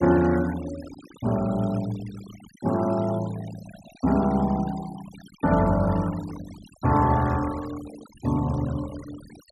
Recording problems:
noise reduction artefacts; signal-to-artefact ratio 18 dB

